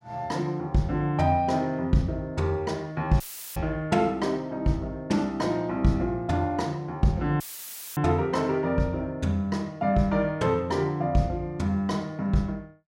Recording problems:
dropout; at 3 s and at 7.5 s for 0.5 s; filled with static

